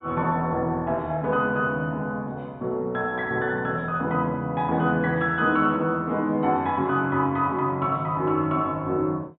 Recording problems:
treble missing; nothing above 4 kHz

